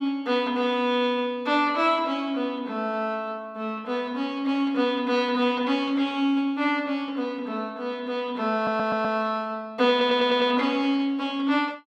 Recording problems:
stutter; at 8.5 s and at 10 s

